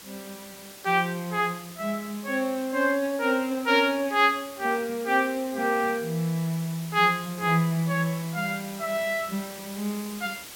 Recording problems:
background hiss; slope -1 dB per octave, SNR 16 dB

